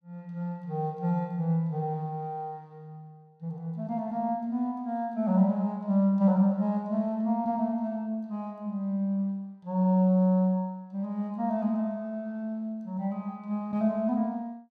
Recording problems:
none

